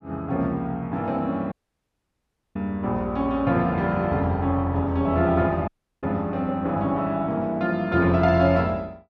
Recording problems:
audio cutting out; at 1.5 s for 1 s and at 5.5 s

